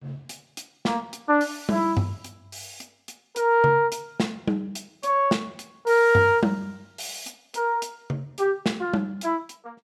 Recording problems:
none

